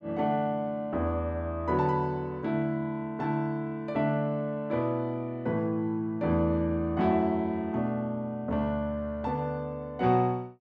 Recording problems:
none

